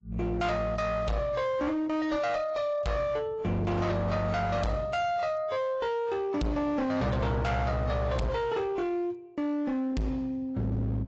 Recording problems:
codec artefacts; AAC, log-spectral distance 2 dB, nothing above 7.6 kHz
distortion; hard clipping, uneven, signal-to-distortion ratio 7 dB

